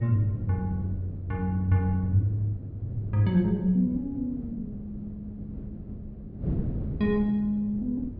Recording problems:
low-pass filter; nothing above 5.5 kHz
wind noise; below 220 Hz, SNR 10 dB

